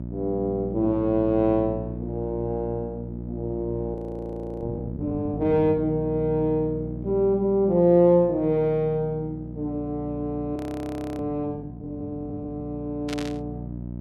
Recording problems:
electrical hum; 60 Hz, harmonics up to 660 Hz, SNR 10 dB
frozen audio; at 4 s for 0.5 s and at 11 s for 0.5 s
static burst; at 13 s; peak -5 dB vs average level

